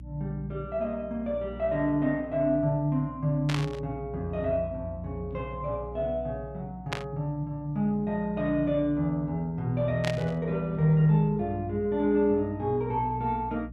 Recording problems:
electrical hum; 60 Hz, harmonics up to 300 Hz, SNR 16 dB
burst of static; at 3.5 s, at 7 s and at 10 s; peak +1 dB vs average level

